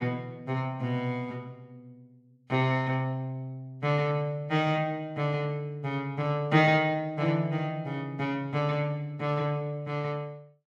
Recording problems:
none

